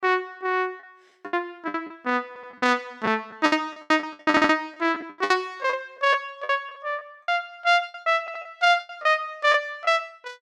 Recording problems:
packet loss; 14% of the sound replaced, filled with the last packet
stutter; at 2.5 s, at 4.5 s and at 8 s

